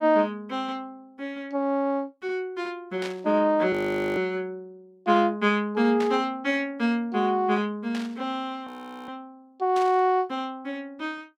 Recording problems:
burst of static; 4 times, first at 3 s; peak -6 dB vs average level
frozen audio; at 3.5 s and at 8.5 s

